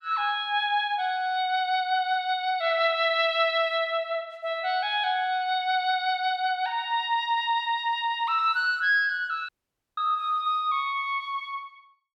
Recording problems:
dropout; at 9.5 s

